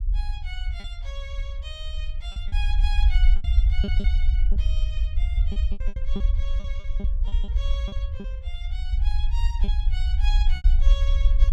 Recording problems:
low-frequency rumble; below 54 Hz, SNR -14 dB
lost packets; 8% of the sound replaced, filled with repeated pitch periods

